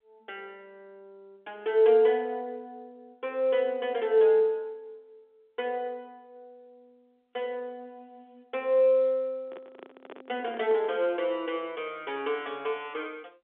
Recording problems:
phone line; 260 Hz to 3.6 kHz, G.711
handling noise; from 9.5 to 11 s; peak -12 dB vs average level

